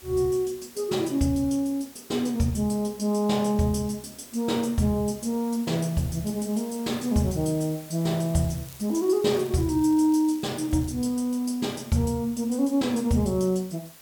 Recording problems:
hiss; slope -1 dB per octave, SNR 20 dB
crackling; from 8.5 to 11 s; loose cable, SNR 25 dB

